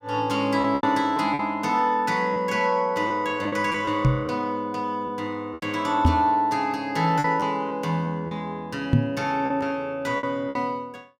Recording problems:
packet loss; 7% of the sound replaced, filled with repeated pitch periods
microphone thump; at 4 s, at 6 s and at 9 s; peak +9 dB vs average level

